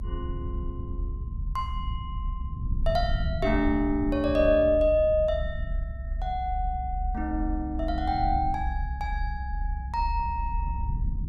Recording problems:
low-frequency rumble; below 68 Hz, strongest tone 38 Hz, SNR 5 dB

